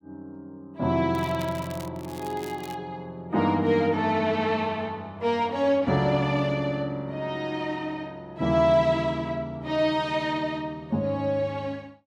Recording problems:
crackling; from 1 to 3 s; loose cable, SNR 20 dB

